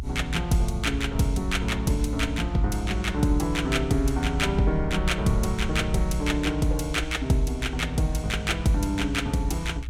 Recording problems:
rumble; below 64 Hz, SNR 7 dB

